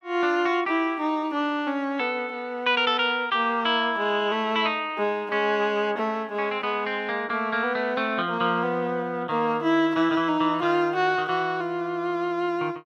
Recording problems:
none

